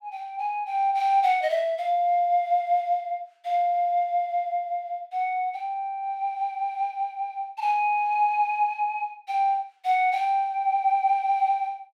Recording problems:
none

